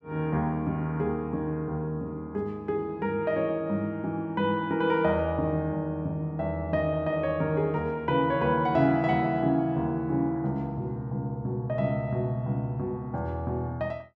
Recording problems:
none

